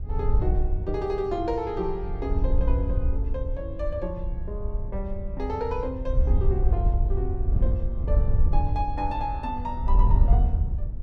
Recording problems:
wind on the microphone; below 68 Hz, SNR -5 dB

